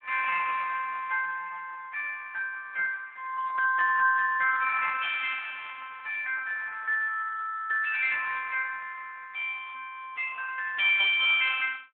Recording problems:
telephone audio; 900 Hz to 2.1 kHz, Speex

